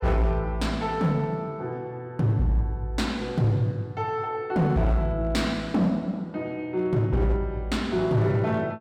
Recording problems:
distortion; hard clipping, signal-to-distortion ratio 12 dB

